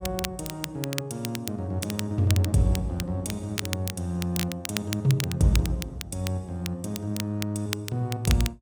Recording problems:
crackling; vinyl, SNR 8 dB

